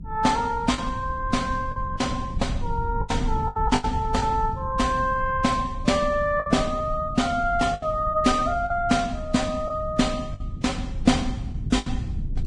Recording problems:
lossy codec; Vorbis, log-spectral distance 2 dB
rumble; below 110 Hz, SNR 9 dB
packet loss; 7% of the sound replaced, filled with the last packet

